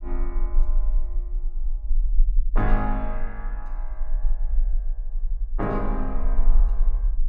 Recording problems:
low-frequency rumble; below 34 Hz, strongest tone 20 Hz, SNR -4 dB

